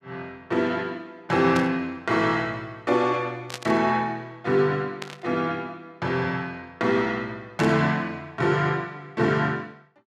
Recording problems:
burst of static; 4 times, first at 1.5 s; peak -3 dB vs average level

